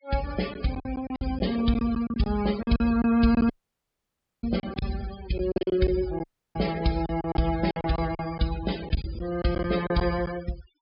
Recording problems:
low-pass filter; nothing above 5.5 kHz
denoising artefacts; signal-to-artefact ratio 13 dB
packet loss; 12% of the sound replaced, filled with silence
audio cutting out; at 3.5 s for 1 s and at 6 s

